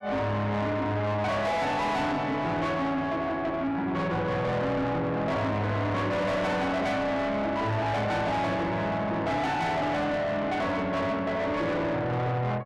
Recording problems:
distortion; soft clipping, signal-to-distortion ratio 7 dB

